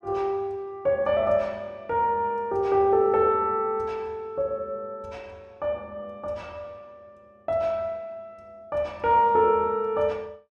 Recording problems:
none

